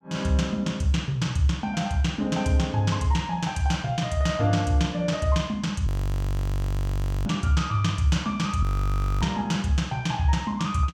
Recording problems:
frozen audio; at 6 s for 1.5 s and at 8.5 s for 0.5 s

